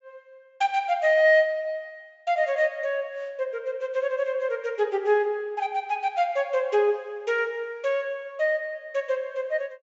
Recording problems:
treble missing; nothing above 8 kHz

